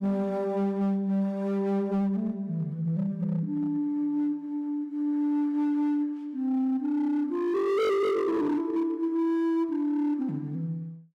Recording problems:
distorted audio; hard clipping, signal-to-distortion ratio 8 dB

